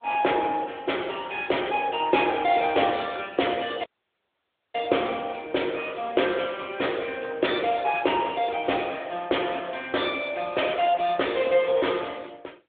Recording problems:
phone line; 300 Hz to 3.6 kHz, AMR-NB
dropout; at 4 s for 1 s

